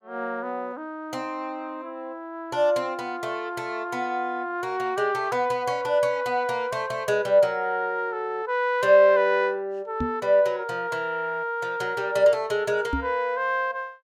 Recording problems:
microphone thump; at 10 s and at 13 s; peak 0 dB vs average level

